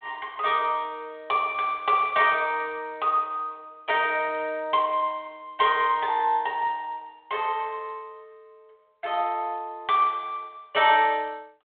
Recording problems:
phone line; 320 Hz to 3.5 kHz, G.726

